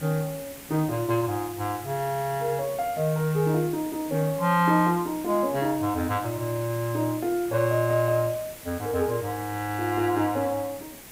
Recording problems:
hiss; slope -3 dB per octave, SNR 15 dB

